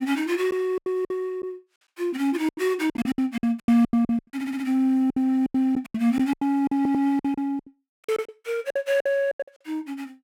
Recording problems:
packet loss; 18% of the sound replaced, filled with silence
audio stuttering; at 4.5 s and at 7 s

